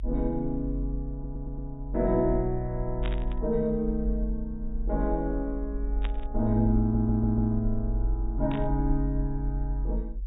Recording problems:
treble missing; nothing above 4 kHz
low-frequency rumble; below 48 Hz, strongest tone 46 Hz, SNR 4 dB
stutter; at 1 s and at 7 s
burst of static; at 3 s, at 6 s and at 8.5 s; peak -6 dB vs average level

